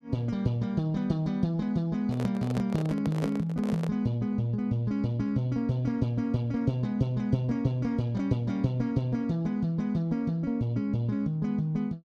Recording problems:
microphone handling noise; from 2 to 4 s; peak -1 dB vs average level

